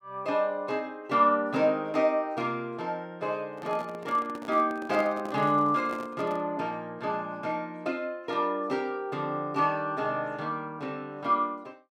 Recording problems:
handling noise; from 3.5 to 6.5 s; peak -6 dB vs average level

